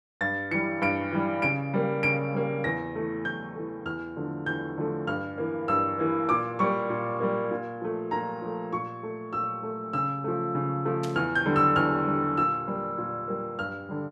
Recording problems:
static burst; at 11 s; peak -8 dB vs average level

